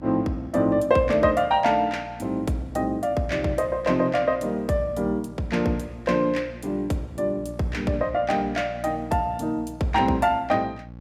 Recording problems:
mains hum; 60 Hz, harmonics up to 840 Hz, SNR 18 dB

